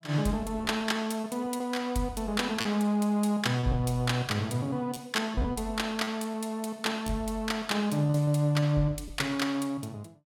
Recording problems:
lost packets; 6% of the sound replaced, filled with repeated pitch periods

